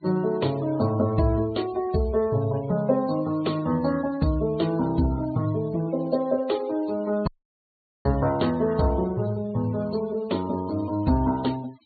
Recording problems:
low-pass filter; nothing above 4.5 kHz
denoising artefacts; signal-to-artefact ratio 22 dB
dropout; at 7.5 s for 1 s

